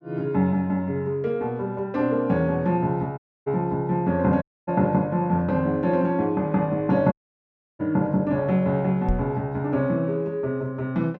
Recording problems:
dropout; at 3 s, at 4.5 s and at 7 s for 0.5 s
knock on the microphone; at 9 s; peak +1 dB vs average level

